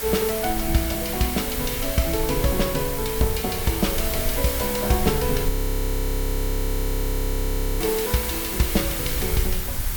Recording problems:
hiss; slope -1 dB per octave, SNR 2 dB
low-frequency rumble; below 60 Hz, strongest tone 34 Hz, SNR 6 dB
audio freezing; at 5.5 s for 2.5 s

